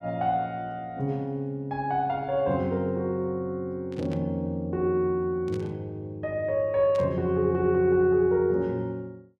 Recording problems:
static burst; at 4 s, at 5.5 s and at 7 s; peak -14 dB vs average level

